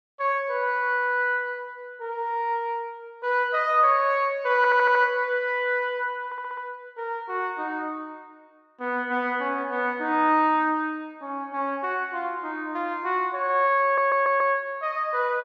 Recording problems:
audio stuttering; at 4.5 s, at 6.5 s and at 14 s

